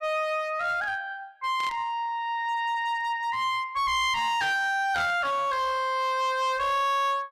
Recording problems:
distorted audio; hard clipping, uneven, signal-to-distortion ratio 10 dB
static burst; at 1.5 s and at 5 s; peak -9 dB vs average level

